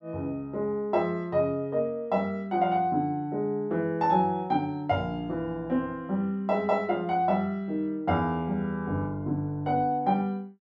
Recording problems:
none

